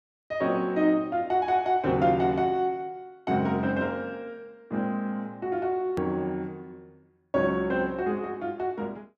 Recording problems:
hard cut with a click; at 6 s

